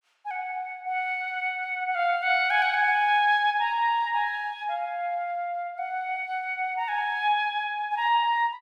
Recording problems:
none

